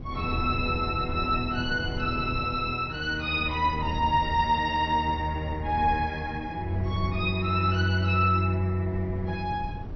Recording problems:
treble cut off; nothing above 5.3 kHz
lossy codec; AAC, log-spectral distance 2 dB
wind noise; below 150 Hz, SNR 12 dB

